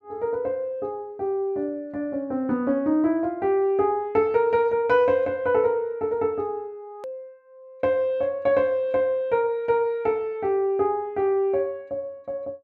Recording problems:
edit click; at 7 s

